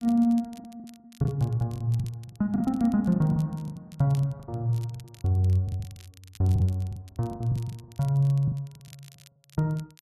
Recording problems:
crackle; vinyl, SNR 27 dB
lost packets; 14% of the sound replaced, filled with the last packet

